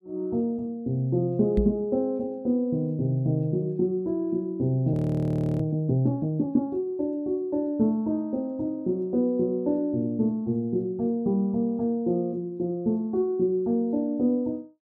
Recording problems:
knock on the microphone; at 1.5 s; peak +5 dB vs average level
frozen audio; at 5 s for 0.5 s

